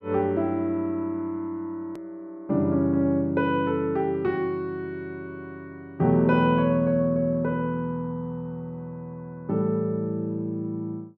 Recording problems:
hard cut with a click; at 2 s

